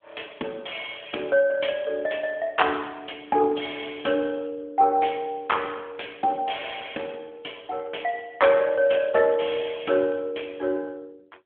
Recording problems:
phone line; 220 Hz to 3.4 kHz, AMR-NB

